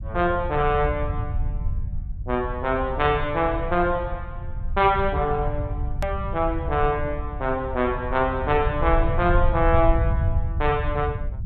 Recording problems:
treble cut off; nothing above 4 kHz
low-frequency rumble; below 90 Hz, SNR 5 dB
click at an edit; at 6 s

